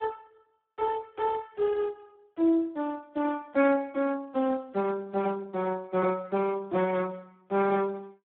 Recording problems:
telephone audio; 220 Hz to 2.5 kHz, Speex

